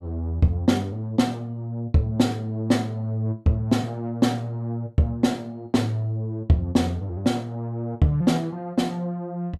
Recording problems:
none

